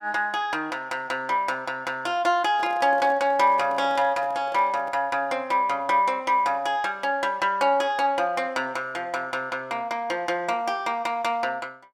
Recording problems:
handling noise; from 2.5 to 5 s; peak -11 dB vs average level

